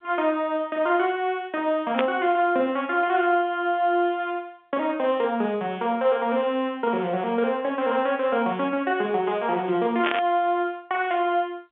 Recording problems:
telephone audio; 190 Hz to 3.4 kHz, G.711
burst of static; at 2 s and at 10 s; peak +1 dB vs average level

